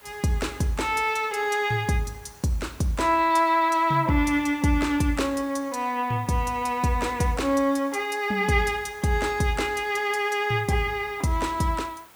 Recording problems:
background hiss; SNR 25 dB

